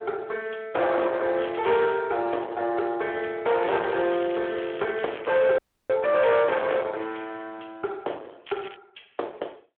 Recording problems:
phone line; 300 Hz to 3.6 kHz, Speex
distorted audio; hard clipping, signal-to-distortion ratio 8 dB
crackle; at 1.5 s, from 3.5 to 5.5 s and at 8.5 s; loose cable, SNR 17 dB
audio cutting out; at 5.5 s

